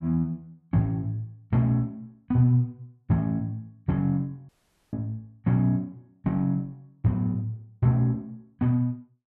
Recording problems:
audio cutting out; at 4.5 s

